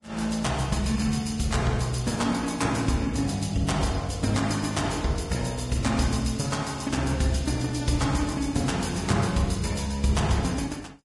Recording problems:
codec artefacts; Vorbis, log-spectral distance 5 dB, nothing above 10.7 kHz

